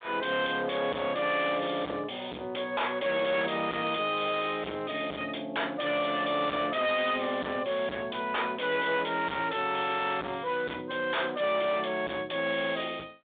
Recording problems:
telephone audio; 190 Hz to 3.7 kHz, G.726
distortion; hard clipping, signal-to-distortion ratio 5 dB

